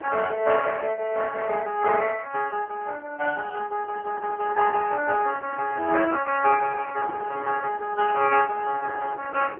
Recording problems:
telephone audio; 300 Hz to 3 kHz, AMR-NB
wind noise; below 740 Hz, SNR 20 dB

